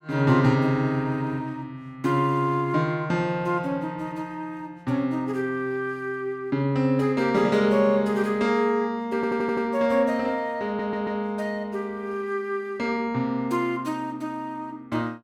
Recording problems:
stutter; at 9 s and at 11 s

